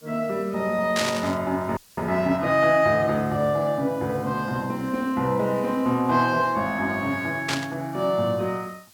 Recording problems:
background hiss; slope +1 dB per octave, SNR 26 dB
burst of static; at 1 s and at 7.5 s; peak +2 dB vs average level
frozen audio; at 2 s

